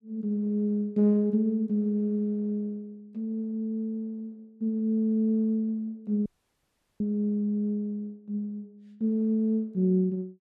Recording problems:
audio cutting out; at 6.5 s for 0.5 s

